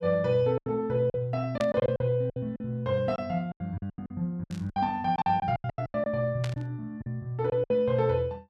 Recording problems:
packet loss; 14% of the sound replaced, filled with silence
burst of static; at 1.5 s, at 4.5 s and at 6.5 s; peak -5 dB vs average level

